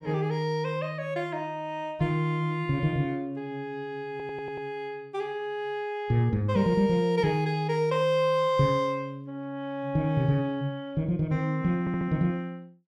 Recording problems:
audio stuttering; at 4 s and at 12 s

